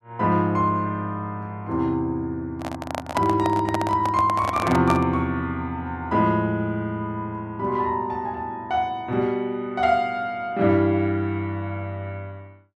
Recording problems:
handling noise; from 2.5 to 5 s; peak +3 dB vs average level

